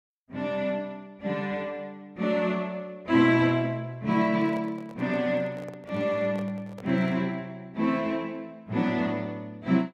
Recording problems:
handling noise; from 4 to 7.5 s; peak -11 dB vs average level

